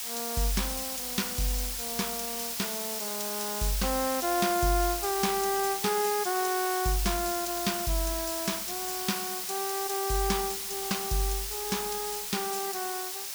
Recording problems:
hiss; SNR 1 dB

